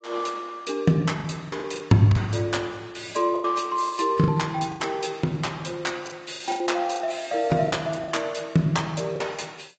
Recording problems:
low-pass filter; nothing above 7.6 kHz
codec artefacts; AAC, log-spectral distance 3 dB
packet loss; 8% of the sound replaced, filled with the last packet

